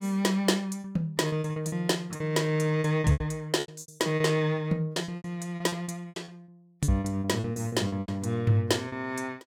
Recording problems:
lost packets; 16% of the sound replaced, filled with repeated pitch periods

